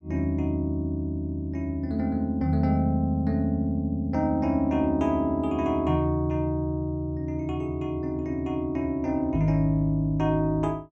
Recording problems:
none

